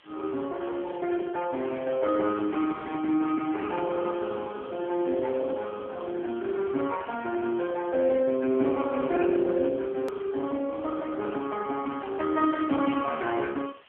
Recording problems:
phone line; 220 Hz to 3.2 kHz, AMR-NB
background hiss; SNR 27 dB
hard cut with a click; at 10 s

